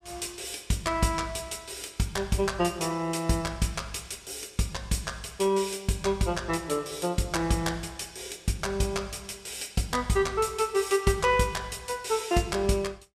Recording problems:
none

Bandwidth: 15 kHz